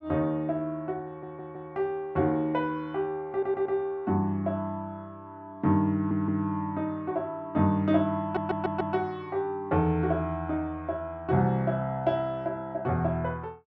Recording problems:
stutter; 4 times, first at 1 s

